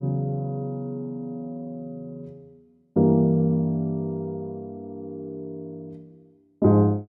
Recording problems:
none

